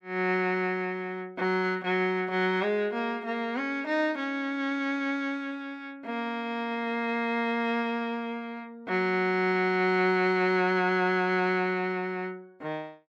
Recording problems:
none

